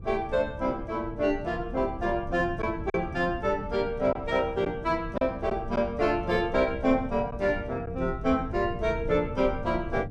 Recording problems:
wind on the microphone; below 150 Hz, SNR 12 dB
lost packets; 1.5% of the sound replaced, filled with silence

